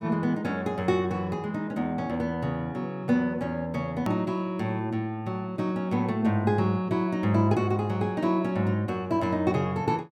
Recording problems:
edit click; at 4 s

